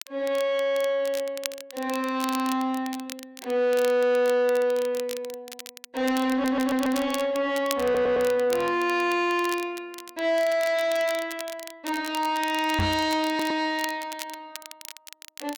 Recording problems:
distortion; soft clipping, signal-to-distortion ratio 10 dB
crackle; vinyl, SNR 15 dB
audio stuttering; at 6.5 s, at 8 s and at 13 s
microphone thump; at 13 s; peak +3 dB vs average level

